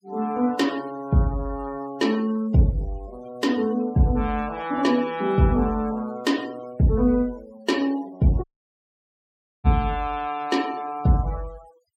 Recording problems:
noise reduction artefacts; signal-to-artefact ratio 20 dB
dropout; at 8.5 s for 1 s

